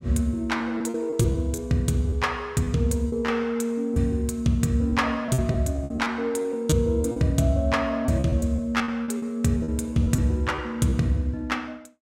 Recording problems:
lost packets; 9% of the sound replaced, filled with repeated pitch periods

